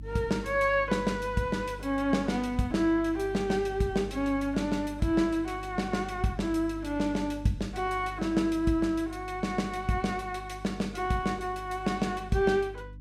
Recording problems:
hum; 50 Hz, harmonics up to 300 Hz, SNR 15 dB

